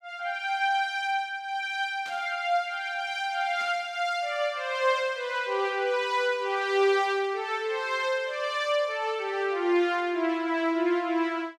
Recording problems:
burst of static; at 2 s and at 3.5 s; peak -14 dB vs average level

